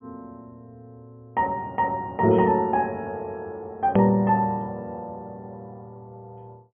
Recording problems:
treble missing; nothing above 3.2 kHz
edit click; at 4 s

